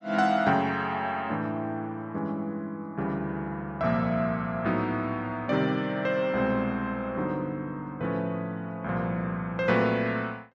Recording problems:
none

